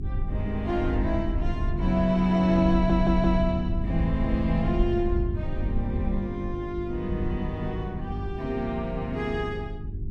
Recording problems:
hum; 50 Hz, harmonics up to 400 Hz, SNR 11 dB
wind noise; below 80 Hz, SNR 5 dB
audio stuttering; at 2.5 s

